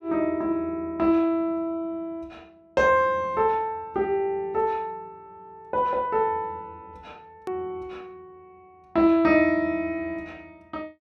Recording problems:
click at an edit; at 7.5 s

